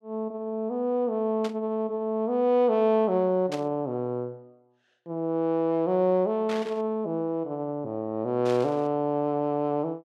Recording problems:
static burst; 4 times, first at 1.5 s; peak -7 dB vs average level

